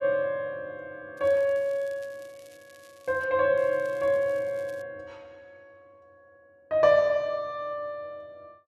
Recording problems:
crackle; from 1 to 3 s and from 3.5 to 5 s; loose cable, SNR 30 dB

